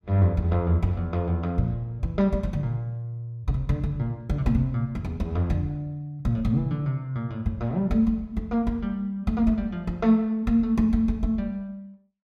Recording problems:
none

